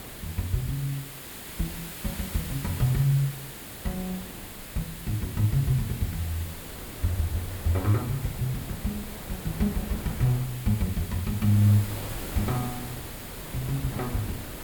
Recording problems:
hiss; slope -2 dB per octave, SNR 10 dB
wind on the microphone; below 580 Hz, SNR 14 dB

